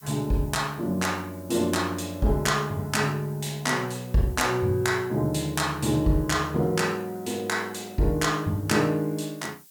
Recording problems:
hiss; slope +4 dB per octave, SNR 23 dB

